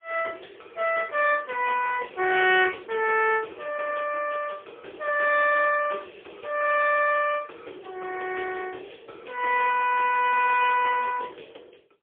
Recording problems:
telephone audio; 300 Hz to 2.8 kHz, AMR-NB, then MP3

